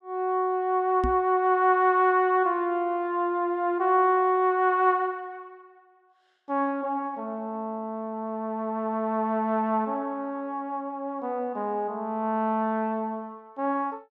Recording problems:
knock on the microphone; at 1 s; peak 0 dB vs average level

